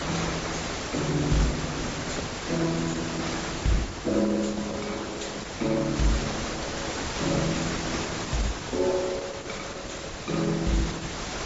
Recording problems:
lossy compression; Opus, then AAC, log-spectral distance 15 dB, nothing above 7.6 kHz
mains hum; 50 Hz, harmonics up to 400 Hz, SNR 23 dB
hiss; slope -3 dB per octave, SNR 3 dB

